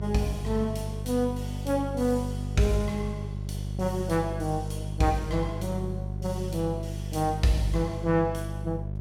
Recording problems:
hum; 50 Hz, harmonics up to 550 Hz, SNR 5 dB

